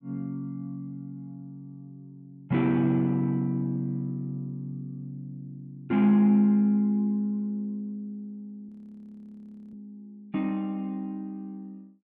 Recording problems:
audio freezing; at 8.5 s for 1 s

